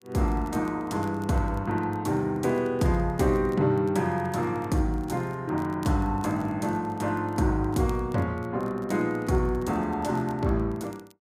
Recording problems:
crackle; vinyl, SNR 30 dB

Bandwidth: 15 kHz